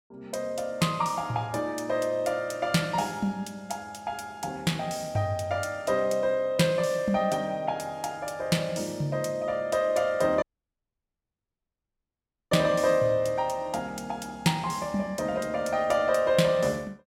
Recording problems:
dropout; at 10 s for 2 s

